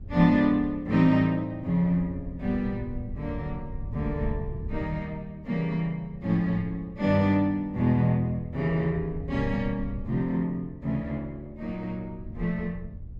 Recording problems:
wind on the microphone; below 100 Hz, SNR 13 dB

